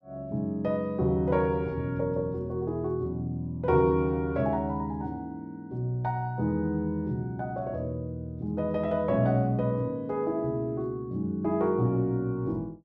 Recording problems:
none

